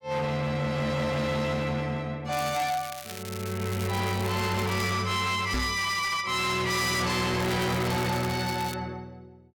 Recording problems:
distorted audio; hard clipping, signal-to-distortion ratio 8 dB
crackling; from 2.5 to 5 s and from 7.5 to 8.5 s; loose cable, SNR 13 dB
microphone thump; at 5.5 s; peak +2 dB vs average level

